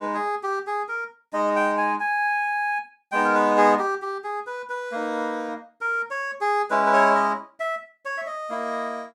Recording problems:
none

